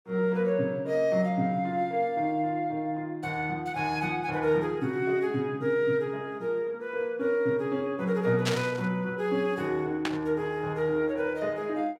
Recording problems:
static burst; at 8.5 s and at 10 s; peak +3 dB vs average level

